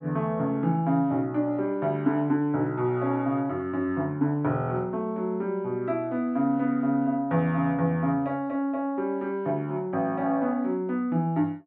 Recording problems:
none

